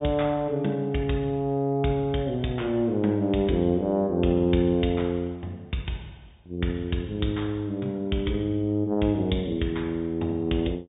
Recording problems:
treble cut off; nothing above 3.7 kHz

